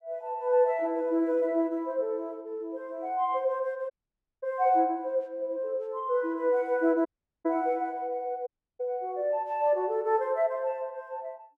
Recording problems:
dropout; at 4 s for 0.5 s, at 7 s and at 8.5 s

